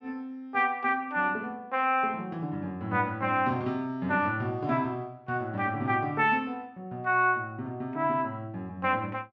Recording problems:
none

